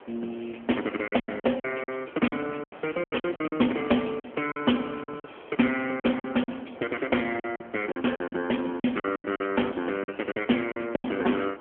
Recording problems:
telephone audio; 190 Hz to 3.3 kHz, AMR-NB
background hiss; SNR 19 dB
lost packets; 13% of the sound replaced, filled with silence

